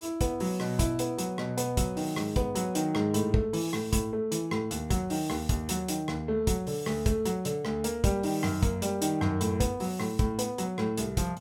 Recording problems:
none

